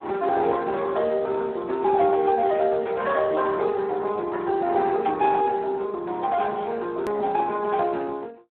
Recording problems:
telephone audio; 260 Hz to 3.1 kHz, Speex
edit click; at 7 s

